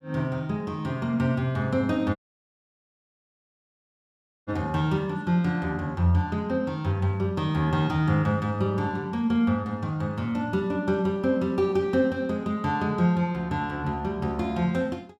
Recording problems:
dropout; at 2 s for 2.5 s

